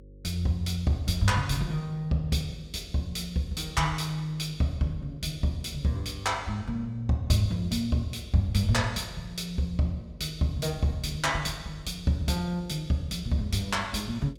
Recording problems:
hum; 50 Hz, harmonics up to 550 Hz, SNR 21 dB

